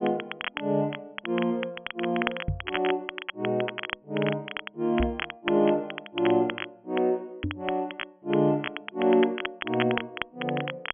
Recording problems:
treble cut off; nothing above 3.3 kHz
crackle; vinyl, SNR 8 dB
knock on the microphone; at 2.5 s, at 5 s and at 7.5 s; peak +3 dB vs average level

